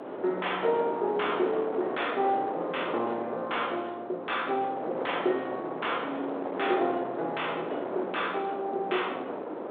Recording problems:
telephone audio; 220 Hz to 3.6 kHz, G.726
distortion; soft clipping, signal-to-distortion ratio 14 dB
wind noise; below 810 Hz, SNR 5 dB

